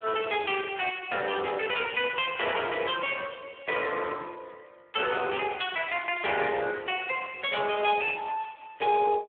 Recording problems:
phone line; 340 Hz to 3.4 kHz, Speex

